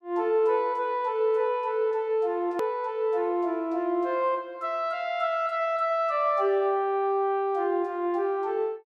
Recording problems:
edit click; at 2.5 s

